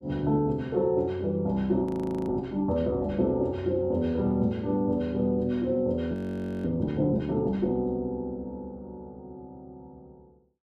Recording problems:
frozen audio; at 2 s and at 6 s for 0.5 s

